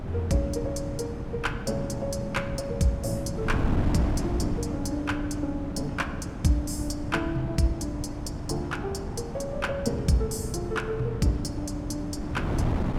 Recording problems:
wind on the microphone; below 260 Hz, SNR 4 dB

